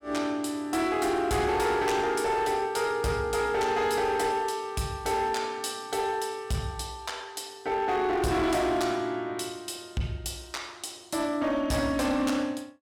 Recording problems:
distortion; hard clipping, signal-to-distortion ratio 11 dB

